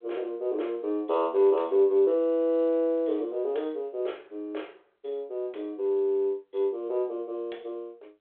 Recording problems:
phone line; 340 Hz to 3.5 kHz, G.726

